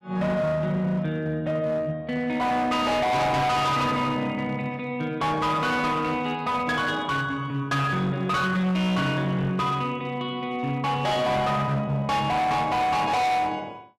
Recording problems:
distortion; hard clipping, signal-to-distortion ratio 7 dB

